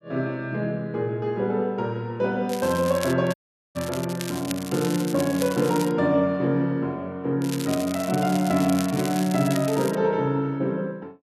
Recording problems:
crackling; at 2.5 s, from 3.5 to 6 s and from 7.5 to 10 s; loose cable, SNR 12 dB
dropout; at 3.5 s

